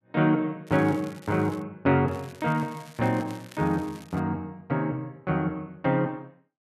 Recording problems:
crackling; at 0.5 s and from 2 to 4 s; loose cable, SNR 23 dB

